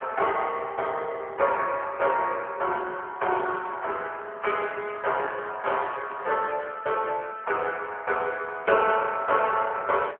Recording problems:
phone line; 370 Hz to 3.9 kHz, AMR-NB

